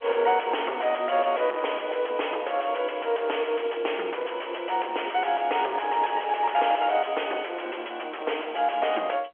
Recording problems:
telephone audio; 320 Hz to 3.3 kHz, G.711
distortion; soft clipping, signal-to-distortion ratio 5 dB

